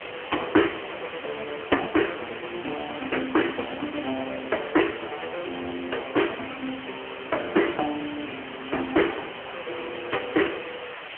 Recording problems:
telephone audio; 260 Hz to 3.1 kHz, AMR-NB
hiss; SNR 10 dB

